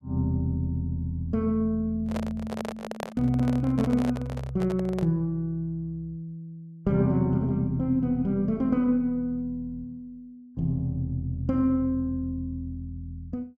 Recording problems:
microphone handling noise; from 2 to 5 s; peak -2 dB vs average level

